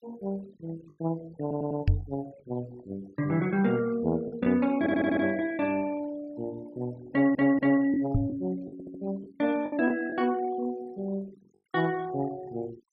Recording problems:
denoising artefacts; signal-to-artefact ratio 22 dB
lost packets; 3% of the sound replaced, filled with the last packet
audio stuttering; 4 times, first at 1.5 s
knock on the microphone; at 2 s and at 8 s; peak +8 dB vs average level

